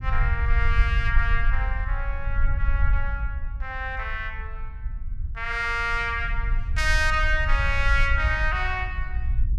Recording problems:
low-frequency rumble; below 58 Hz, SNR 1 dB

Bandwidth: 15.5 kHz